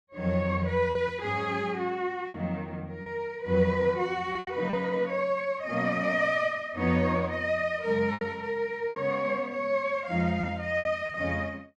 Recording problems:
packet loss; 5% of the sound replaced, filled with repeated pitch periods

